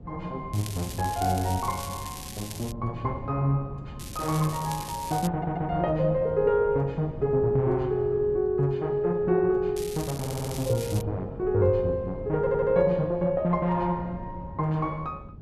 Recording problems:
wind noise; below 200 Hz, SNR 15 dB
crackling; from 0.5 to 2.5 s, from 4 to 5.5 s and from 10 to 11 s; loose cable, SNR 13 dB
audio stuttering; at 5.5 s, at 10 s and at 12 s

